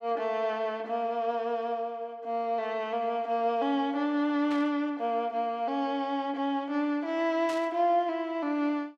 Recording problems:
static burst; at 4.5 s and at 7.5 s; peak -9 dB vs average level

